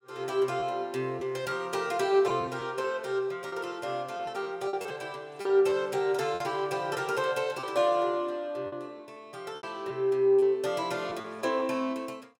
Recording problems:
packet loss; 6% of the sound replaced, filled with repeated pitch periods

